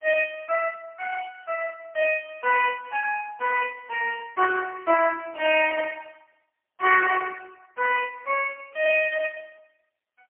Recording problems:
phone line; 320 Hz to 2.6 kHz, AMR-NB, then MP3

